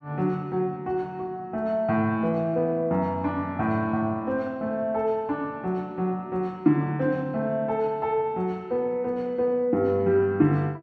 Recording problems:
none

